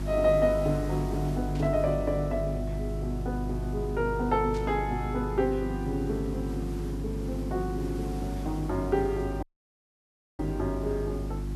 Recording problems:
hum; 50 Hz, harmonics up to 350 Hz, SNR 4 dB
hiss; slope -4 dB per octave, SNR 18 dB
static burst; at 1.5 s and at 4.5 s; peak -13 dB vs average level
dropout; at 9.5 s for 1 s

